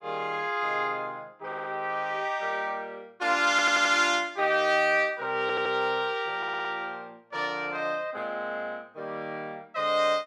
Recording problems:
audio stuttering; 4 times, first at 1.5 s

